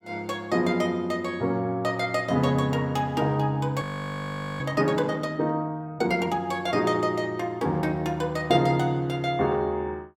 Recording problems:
audio freezing; at 4 s for 1 s

